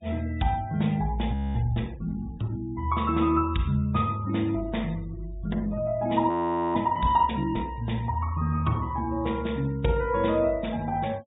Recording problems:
low-pass filter; nothing above 4 kHz
denoising artefacts; signal-to-artefact ratio 26 dB
audio freezing; at 1.5 s and at 6.5 s

